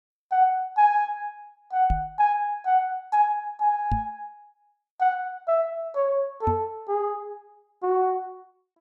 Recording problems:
knock on the microphone; at 2 s, at 4 s and at 6.5 s; peak +1 dB vs average level

